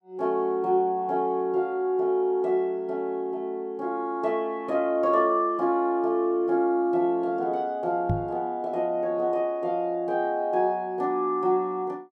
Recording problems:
knock on the microphone; at 8 s; peak +3 dB vs average level

